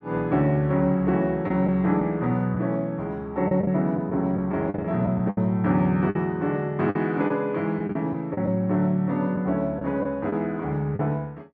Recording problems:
lost packets; 6% of the sound replaced, filled with the last packet

